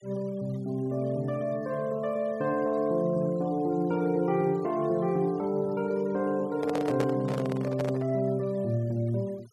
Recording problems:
noise reduction artefacts; signal-to-artefact ratio 26 dB
handling noise; from 6.5 to 8 s; peak 0 dB vs average level

